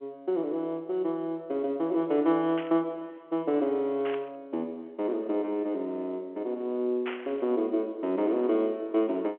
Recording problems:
telephone audio; 260 Hz to 3.3 kHz, G.711
burst of static; at 2.5 s, at 4 s and at 7 s; peak -4 dB vs average level

